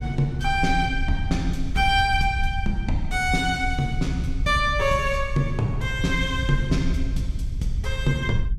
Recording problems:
low-frequency rumble; below 72 Hz, SNR 6 dB

